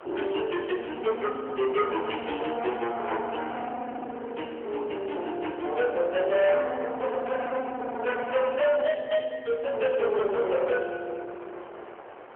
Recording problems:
phone line; 320 Hz to 3.1 kHz, AMR-NB
distorted audio; hard clipping, signal-to-distortion ratio 9 dB
wind noise; below 1.2 kHz, SNR 18 dB

